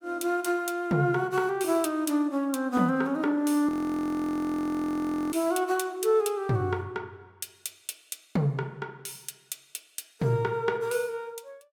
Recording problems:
frozen audio; at 3.5 s for 1.5 s

